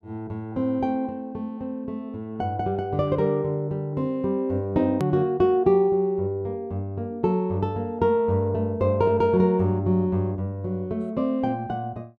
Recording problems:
click at an edit; at 5 s

